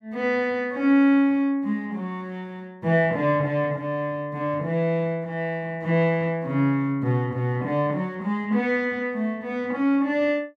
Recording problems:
none

